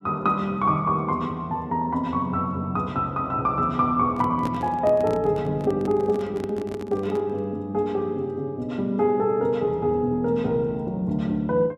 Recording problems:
microphone handling noise; from 4 to 7.5 s; peak -2 dB vs average level

